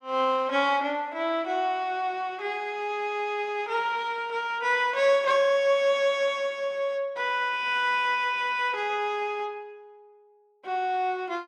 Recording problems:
none

